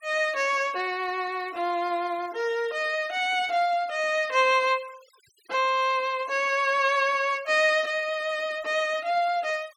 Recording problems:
denoising artefacts; signal-to-artefact ratio 24 dB

